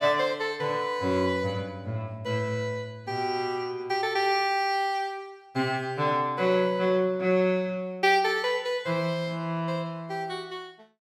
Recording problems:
none

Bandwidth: 16 kHz